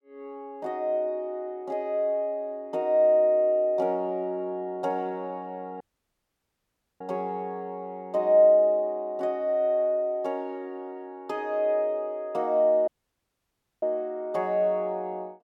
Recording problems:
audio cutting out; at 6 s for 1 s and at 13 s for 1 s

